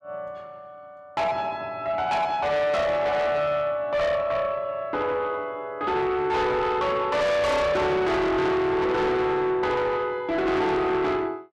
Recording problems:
distorted audio; soft clipping, signal-to-distortion ratio 7 dB

